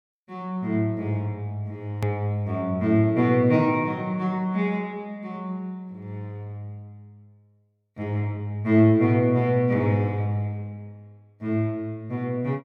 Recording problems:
hard cut with a click; at 2 s

